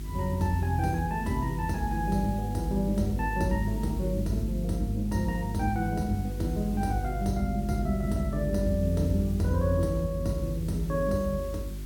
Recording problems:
electrical hum; 50 Hz, harmonics up to 400 Hz, SNR 6 dB
hiss; slope 0 dB per octave, SNR 21 dB

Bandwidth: 17 kHz